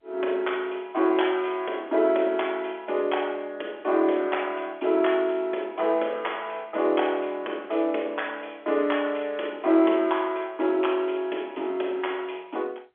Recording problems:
phone line; 280 Hz to 3.4 kHz, G.711

